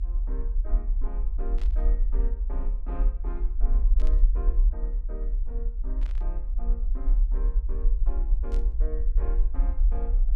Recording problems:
rumble; below 42 Hz, strongest tone 36 Hz, SNR -16 dB
burst of static; 4 times, first at 1.5 s; peak -2 dB vs average level

